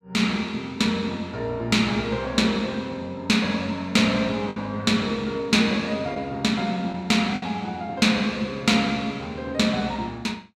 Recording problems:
lost packets; 1.5% of the sound replaced, filled with the last packet

